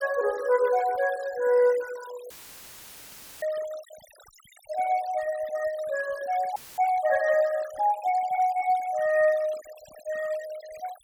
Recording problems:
denoising artefacts; signal-to-artefact ratio 20 dB
dropout; at 2.5 s for 1 s and at 6.5 s; filled with static

